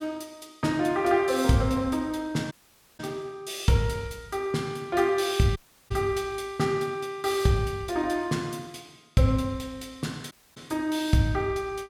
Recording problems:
dropout; at 2.5 s, at 5.5 s and at 10 s

